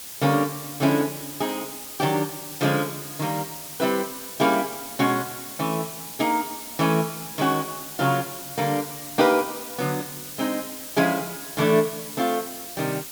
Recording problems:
hiss; slope 0 dB per octave, SNR 9 dB

